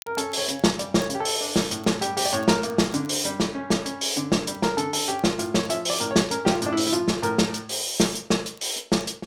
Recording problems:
crackling; vinyl, SNR 29 dB

